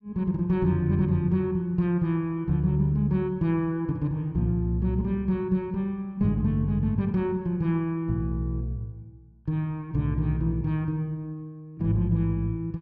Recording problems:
none

